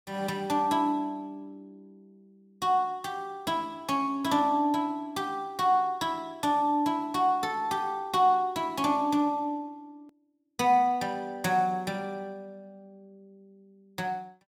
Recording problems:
edit click; at 10 s

